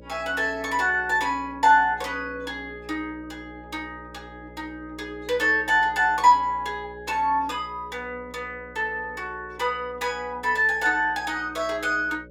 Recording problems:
mains hum; 60 Hz, harmonics up to 600 Hz, SNR 22 dB

